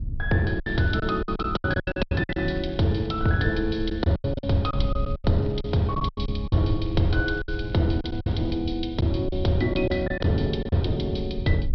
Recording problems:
treble cut off; nothing above 5.3 kHz
codec artefacts; G.722, log-spectral distance 3 dB
rumble; below 86 Hz, SNR 8 dB
packet loss; 12% of the sound replaced, filled with silence
crackling; 4 times, first at 0.5 s; loose cable, SNR 30 dB

